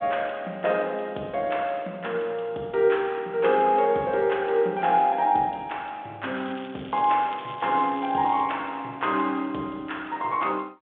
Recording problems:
phone line; 220 Hz to 3.6 kHz, G.726
crackling; from 6.5 to 8.5 s; loose cable, SNR 22 dB

